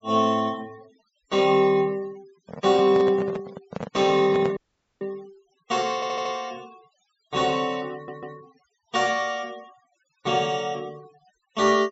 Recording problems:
treble missing; nothing above 8 kHz
noise reduction artefacts; signal-to-artefact ratio 25 dB
handling noise; from 2.5 to 4.5 s; peak -2 dB vs average level
audio cutting out; at 4.5 s
stutter; at 6 s and at 8 s

